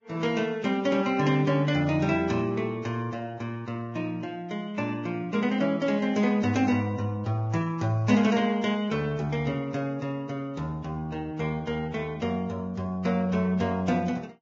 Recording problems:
lossy codec; Vorbis, log-spectral distance 2 dB, nothing above 6.7 kHz

